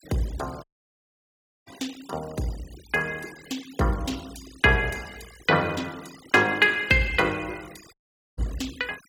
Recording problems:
noise reduction artefacts; signal-to-artefact ratio 20 dB
audio cutting out; at 0.5 s for 1 s and at 8 s

